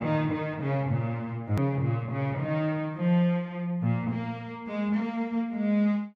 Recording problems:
hard cut with a click; at 1.5 s

